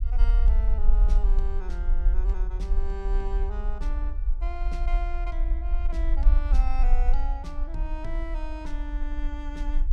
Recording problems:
rumble; below 44 Hz, SNR -11 dB

